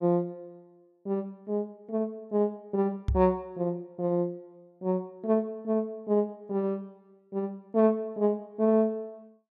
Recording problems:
microphone thump; at 3 s; peak +4 dB vs average level

